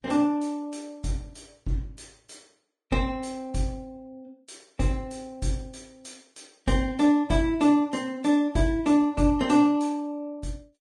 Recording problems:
lossy compression; Vorbis, log-spectral distance 3 dB, nothing above 10.1 kHz

